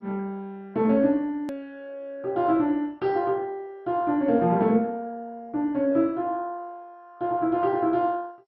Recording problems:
codec artefacts; MP2, log-spectral distance 2 dB, nothing above 13.1 kHz
hard cut with a click; at 1.5 s

